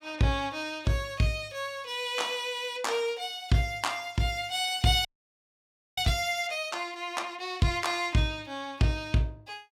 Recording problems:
frozen audio; at 5 s for 1 s

